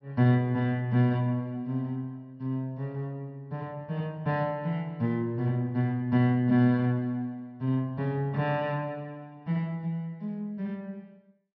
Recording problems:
treble cut off; nothing above 5.7 kHz

